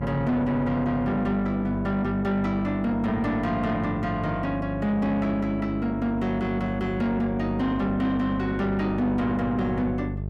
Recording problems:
distorted audio; soft clipping, signal-to-distortion ratio 11 dB
hum; 50 Hz, harmonics up to 650 Hz, SNR 8 dB

